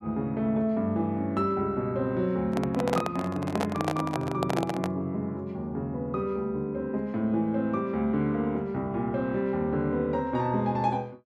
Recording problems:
handling noise; from 2.5 to 5 s; peak +3 dB vs average level

